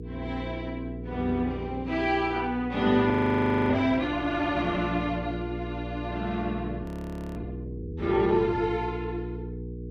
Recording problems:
hum; 60 Hz, harmonics up to 480 Hz, SNR 10 dB
frozen audio; at 3 s for 0.5 s and at 7 s for 0.5 s

